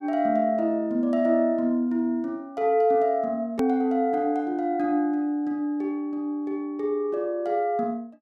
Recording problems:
click at an edit; at 3.5 s

